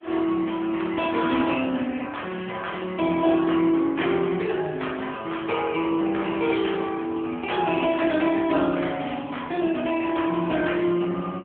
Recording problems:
phone line; 220 Hz to 3.4 kHz, AMR-NB

